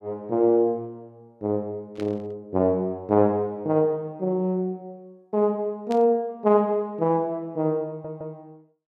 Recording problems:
burst of static; at 2 s and at 6 s; peak -12 dB vs average level
audio stuttering; at 8 s

